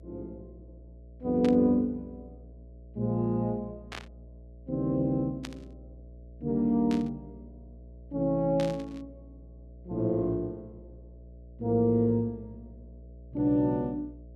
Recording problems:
hum; 60 Hz, harmonics up to 660 Hz, SNR 21 dB
burst of static; 5 times, first at 1.5 s; peak -7 dB vs average level

